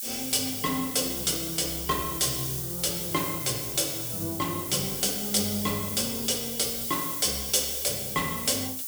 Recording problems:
hiss; SNR 3 dB

